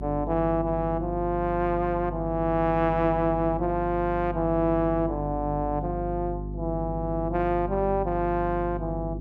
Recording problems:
hum; 50 Hz, harmonics up to 400 Hz, SNR 8 dB

